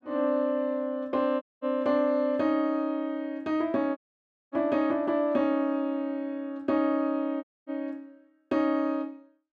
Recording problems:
dropout; at 1.5 s, at 4 s for 0.5 s and at 7.5 s

